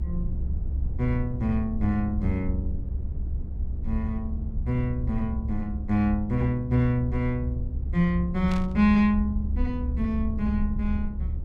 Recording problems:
low-frequency rumble; below 70 Hz, SNR 4 dB
static burst; at 8.5 s; peak -8 dB vs average level

